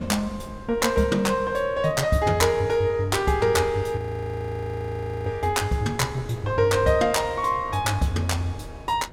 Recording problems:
wind noise; below 370 Hz, SNR 18 dB
frozen audio; at 4 s for 1.5 s

